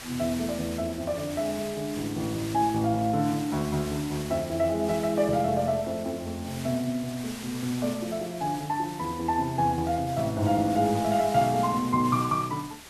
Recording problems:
hiss; slope -1 dB per octave, SNR 14 dB

